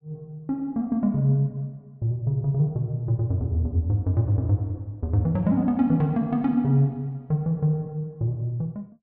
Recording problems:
none

